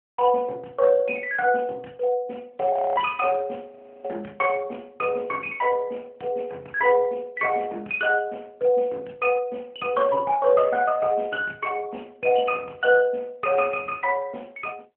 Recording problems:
telephone audio; 280 Hz to 3.2 kHz, AMR-NB
audio freezing; at 2.5 s and at 3.5 s

